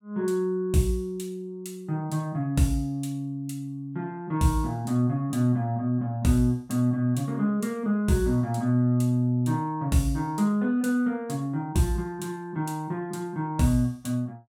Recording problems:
none

